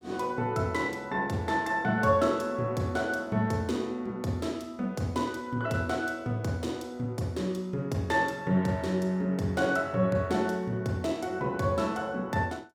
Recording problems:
none

